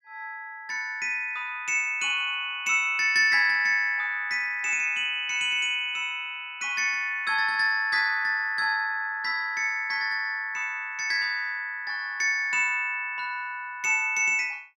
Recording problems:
none

